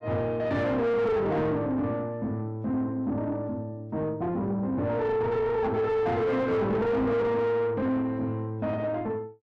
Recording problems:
distorted audio; soft clipping, signal-to-distortion ratio 7 dB

